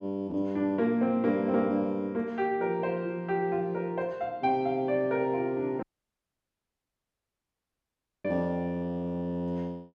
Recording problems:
dropout; at 6 s for 2.5 s

